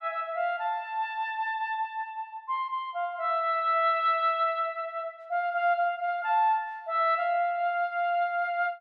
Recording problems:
none

